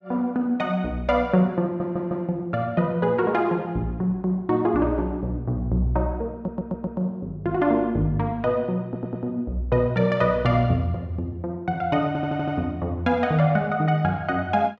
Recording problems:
stutter; 4 times, first at 1.5 s

